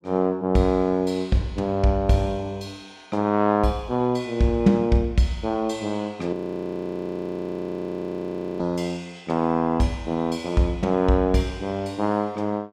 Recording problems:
frozen audio; at 6.5 s for 2.5 s

